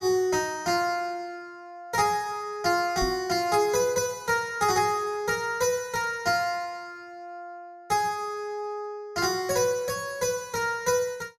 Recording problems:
knock on the microphone; at 3 s; peak -3 dB vs average level

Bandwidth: 13.5 kHz